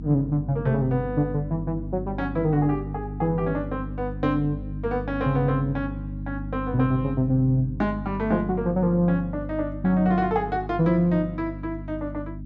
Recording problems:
treble missing; nothing above 8 kHz
hum; 50 Hz, harmonics up to 300 Hz, SNR 9 dB

